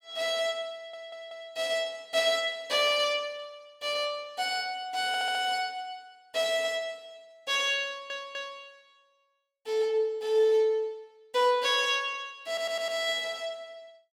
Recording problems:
audio stuttering; 4 times, first at 1 s

